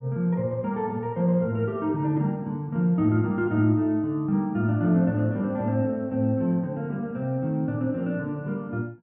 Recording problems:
none

